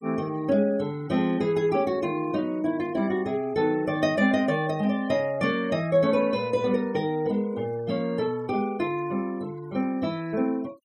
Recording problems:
noise reduction artefacts; signal-to-artefact ratio 24 dB

